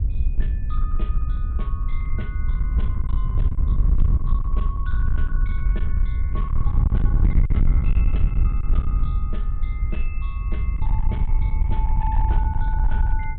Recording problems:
low-pass filter; nothing above 4 kHz
distorted audio; hard clipping, signal-to-distortion ratio 11 dB
wind noise; below 66 Hz, SNR -14 dB

